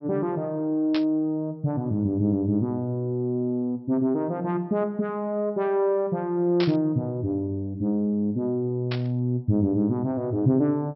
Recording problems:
treble cut off; nothing above 5.6 kHz
static burst; at 1 s, at 6.5 s and at 9 s; peak -2 dB vs average level

